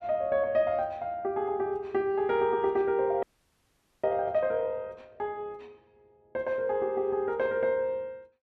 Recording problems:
audio freezing; at 3 s for 1 s

